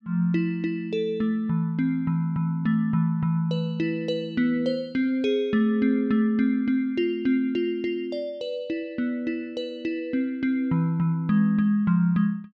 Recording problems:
none

